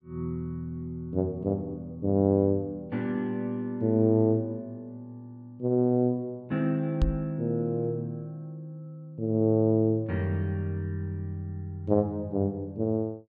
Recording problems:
knock on the microphone; at 7 s; peak +5 dB vs average level

